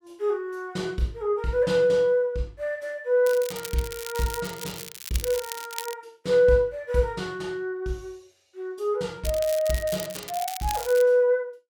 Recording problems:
crackling; from 3.5 to 6 s and from 9 to 11 s; loose cable, SNR 11 dB

